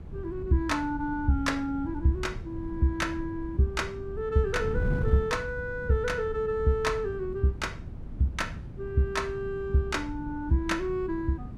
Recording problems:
wind noise; below 160 Hz, SNR 9 dB

